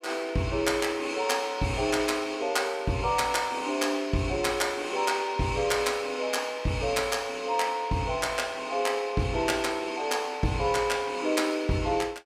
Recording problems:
none

